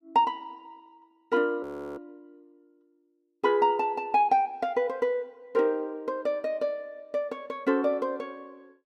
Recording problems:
audio freezing; at 1.5 s

